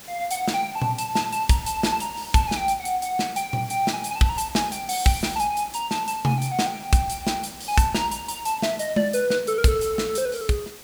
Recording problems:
hiss; slope -2 dB per octave, SNR 16 dB

